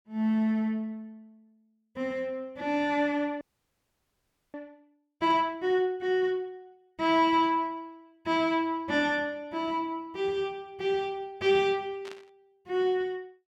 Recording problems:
frozen audio; at 3.5 s for 1 s
burst of static; at 5.5 s and at 12 s; peak -13 dB vs average level

